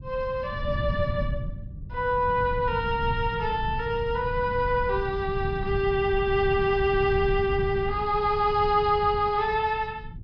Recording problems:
low-pass filter; nothing above 5.5 kHz
rumble; below 140 Hz, SNR 9 dB

